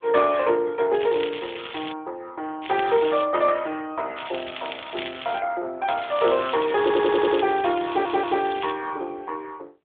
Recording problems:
telephone audio; 300 Hz to 3.6 kHz, AMR-NB
crackling; 4 times, first at 1 s; loose cable, SNR 11 dB
stutter; at 7 s and at 8 s

